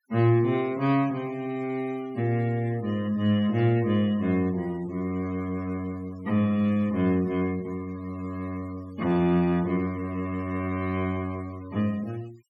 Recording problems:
denoising artefacts; signal-to-artefact ratio 23 dB

